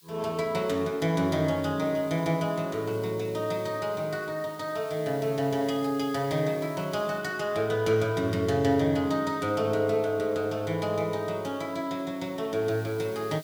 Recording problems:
hiss; slope +5 dB per octave, SNR 23 dB

